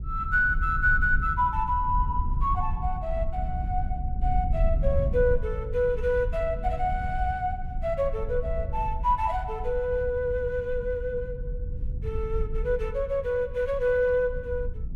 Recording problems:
low-frequency rumble; below 74 Hz, SNR 5 dB

